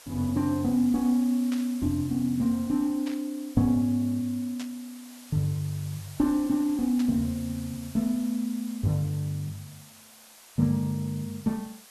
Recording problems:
hiss; SNR 20 dB
burst of static; 4 times, first at 1.5 s; peak -9 dB vs average level

